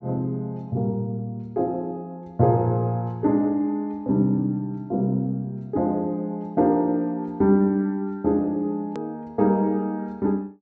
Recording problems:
low-pass filter; nothing above 8 kHz
edit click; at 9 s

